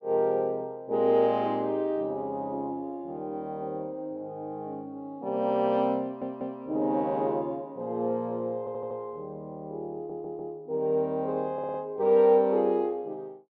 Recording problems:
stutter; 4 times, first at 6 s

